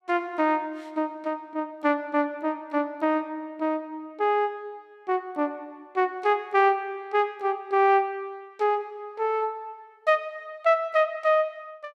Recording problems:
none

